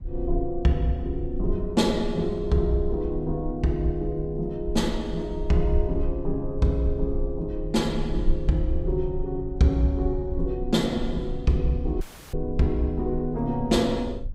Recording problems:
low-frequency rumble; below 48 Hz, strongest tone 20 Hz, SNR 9 dB
audio cutting out; at 12 s

